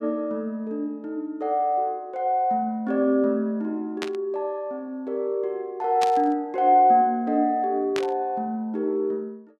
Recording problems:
static burst; at 4 s, at 6 s and at 8 s; peak -2 dB vs average level

